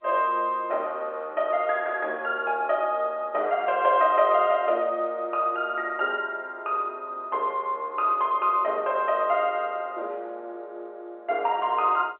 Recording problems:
telephone audio; 320 Hz to 3.3 kHz, G.711

